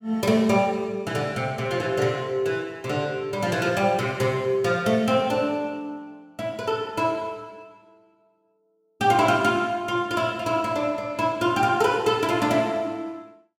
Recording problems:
none

